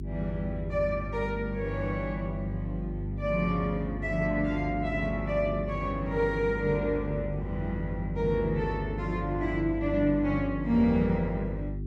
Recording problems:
hum; 50 Hz, harmonics up to 400 Hz, SNR 6 dB

